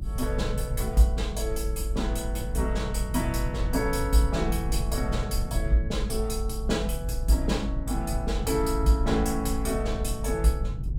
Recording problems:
low-frequency rumble; below 64 Hz, strongest tone 50 Hz, SNR 3 dB

